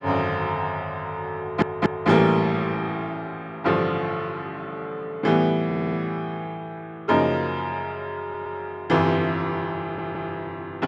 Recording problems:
stutter; 4 times, first at 1.5 s

